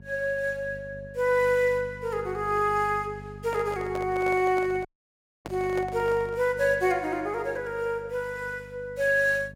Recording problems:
hum; 50 Hz, harmonics up to 650 Hz, SNR 18 dB
handling noise; from 3.5 to 6.5 s; peak -6 dB vs average level
audio cutting out; at 5 s for 0.5 s

